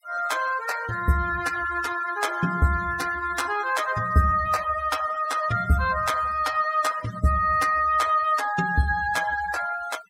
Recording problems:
denoising artefacts; signal-to-artefact ratio 16 dB

